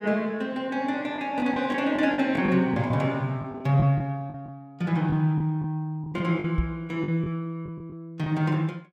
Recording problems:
lost packets; 8% of the sound replaced, filled with the last packet
microphone bump; at 6.5 s; peak +3 dB vs average level

